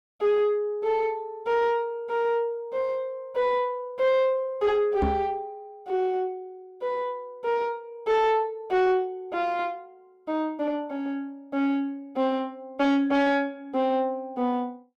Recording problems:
distorted audio; soft clipping, signal-to-distortion ratio 11 dB
knock on the microphone; at 5 s; peak +4 dB vs average level

